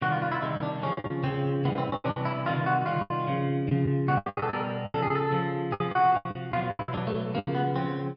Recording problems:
lost packets; 15% of the sound replaced, filled with the last packet

